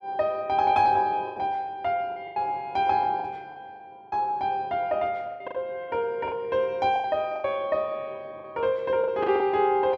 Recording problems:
lost packets; 9% of the sound replaced, filled with the last packet

